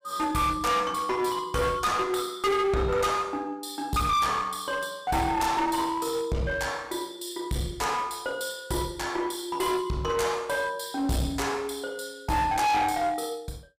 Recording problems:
distorted audio; hard clipping, uneven, signal-to-distortion ratio 7 dB

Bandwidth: 15.5 kHz